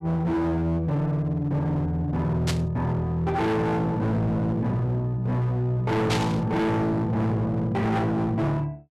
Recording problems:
distorted audio; hard clipping, signal-to-distortion ratio 7 dB
static burst; at 2.5 s and at 6 s; peak +1 dB vs average level

